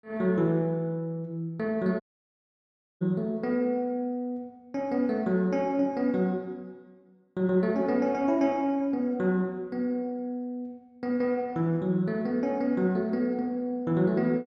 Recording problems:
audio cutting out; at 2 s for 1 s

